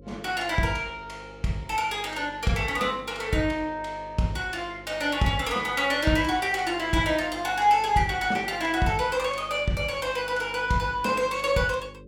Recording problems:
mains hum; 50 Hz, harmonics up to 550 Hz, SNR 22 dB

